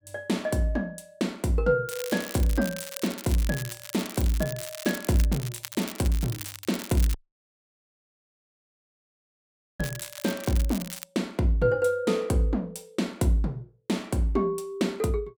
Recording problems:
crackle; from 2 to 11 s; loose cable, SNR 10 dB
dropout; at 7 s for 2.5 s

